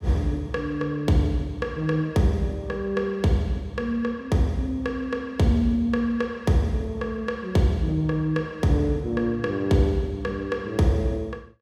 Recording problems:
none

